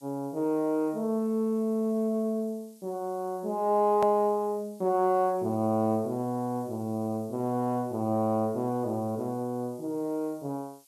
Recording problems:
background hiss; SNR 27 dB
edit click; at 4 s

